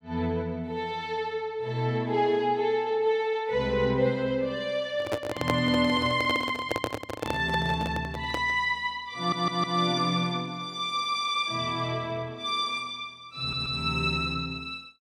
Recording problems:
handling noise; from 5 to 8.5 s; peak +3 dB vs average level
audio stuttering; at 9 s and at 13 s

